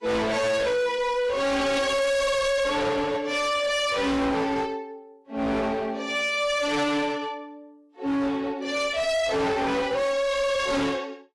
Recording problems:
lossy compression; AAC, log-spectral distance 2 dB, nothing above 11 kHz
distorted audio; hard clipping, uneven, signal-to-distortion ratio 5 dB

